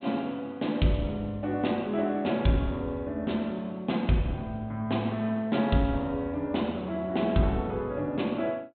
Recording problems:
low-pass filter; nothing above 4 kHz

